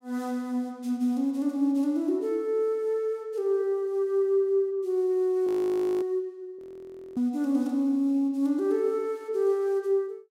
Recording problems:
frozen audio; at 5.5 s for 0.5 s and at 6.5 s for 0.5 s

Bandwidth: 16 kHz